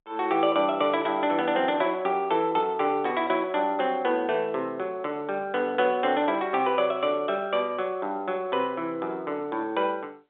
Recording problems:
telephone audio; 220 Hz to 3.6 kHz, G.711

